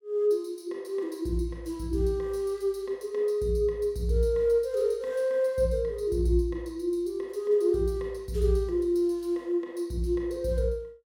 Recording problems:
none

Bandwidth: 17 kHz